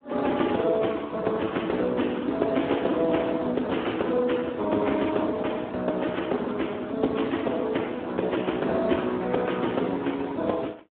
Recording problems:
telephone audio; 190 Hz to 3.4 kHz, Speex

